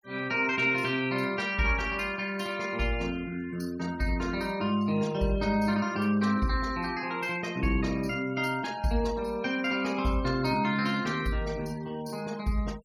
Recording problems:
noise reduction artefacts; signal-to-artefact ratio 21 dB

